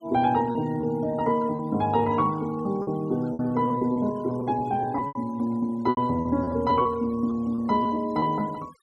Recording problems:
denoising artefacts; signal-to-artefact ratio 26 dB
lost packets; 9% of the sound replaced, filled with repeated pitch periods

